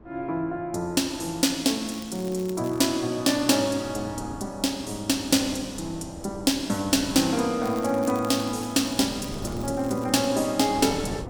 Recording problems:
wind on the microphone; below 440 Hz, SNR 18 dB
crackling; at 2 s and from 7.5 to 10 s; loose cable, SNR 21 dB

